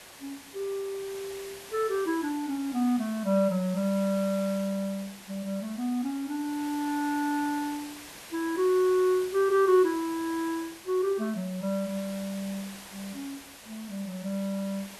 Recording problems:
background hiss; slope -1 dB per octave, SNR 15 dB

